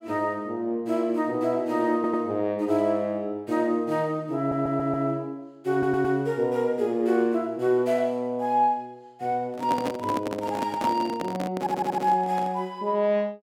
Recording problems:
stutter; 4 times, first at 2 s
microphone handling noise; from 9.5 to 13 s; peak -1 dB vs average level

